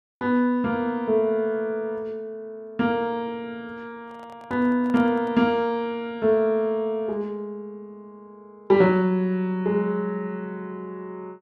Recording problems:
microphone handling noise; from 4 to 5.5 s; peak -11 dB vs average level

